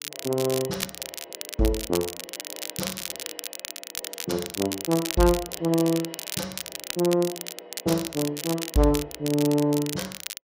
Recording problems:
crackle; vinyl, SNR 7 dB

